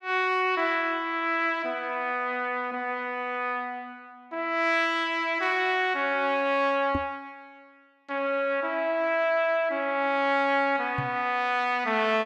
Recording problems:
microphone bump; at 7 s and at 11 s; peak -1 dB vs average level

